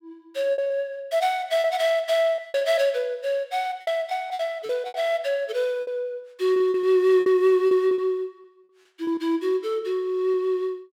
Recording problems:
lost packets; 10% of the sound replaced, filled with repeated pitch periods

